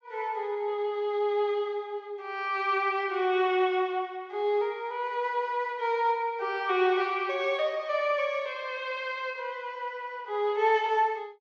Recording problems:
treble cut off; nothing above 8 kHz

